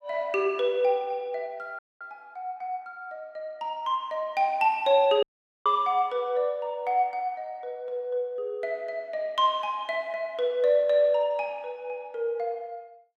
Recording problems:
audio cutting out; at 2 s and at 5 s

